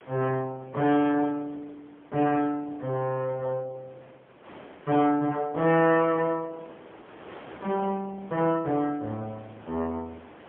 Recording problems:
phone line; 240 Hz to 3.2 kHz, AMR-NB, then MP3
distortion; soft clipping, signal-to-distortion ratio 14 dB
wind on the microphone; below 1.3 kHz, SNR 23 dB

